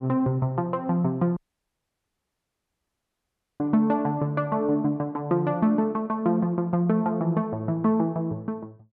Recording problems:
audio cutting out; at 1.5 s for 2 s

